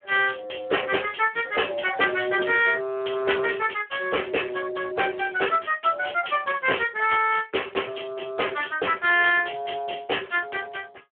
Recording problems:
telephone audio; 320 Hz to 3.3 kHz, Speex

